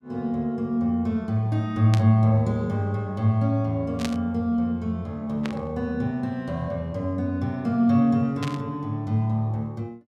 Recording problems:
burst of static; 4 times, first at 2 s; peak -3 dB vs average level

